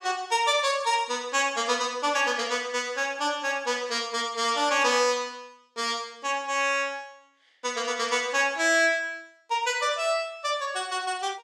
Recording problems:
none

